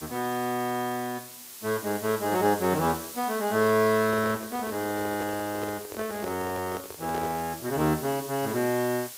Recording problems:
background hiss; slope +1 dB per octave, SNR 12 dB
microphone handling noise; from 4 to 7.5 s; peak -4 dB vs average level

